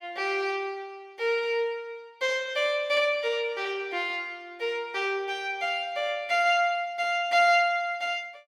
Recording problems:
none

